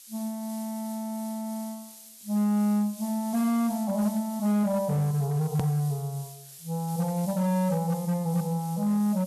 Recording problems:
distortion; hard clipping, signal-to-distortion ratio 11 dB
hiss; SNR 16 dB
edit click; at 5.5 s

